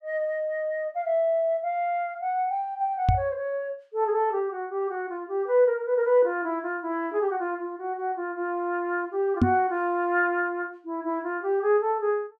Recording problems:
knock on the microphone; at 3 s and at 9.5 s; peak +9 dB vs average level

